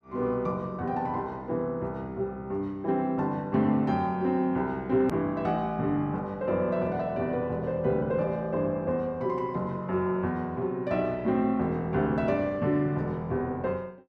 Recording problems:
hard cut with a click; at 5 s

